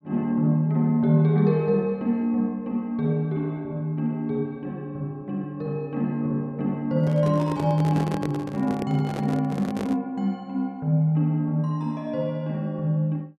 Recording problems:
handling noise; from 7 to 10 s; peak -4 dB vs average level

